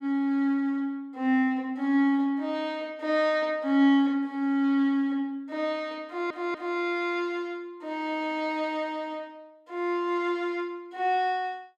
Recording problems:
stutter; at 6 s

